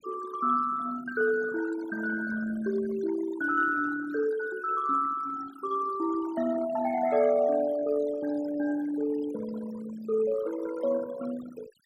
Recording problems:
noise reduction artefacts; signal-to-artefact ratio 15 dB

